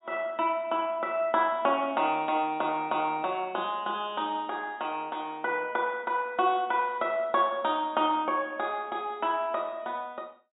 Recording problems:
low-pass filter; nothing above 4 kHz

